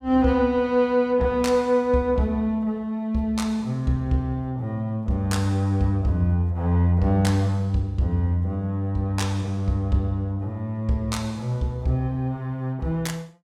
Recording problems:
none

